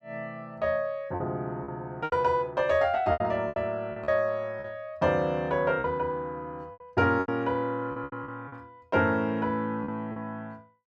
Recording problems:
lost packets; 9% of the sound replaced, filled with repeated pitch periods

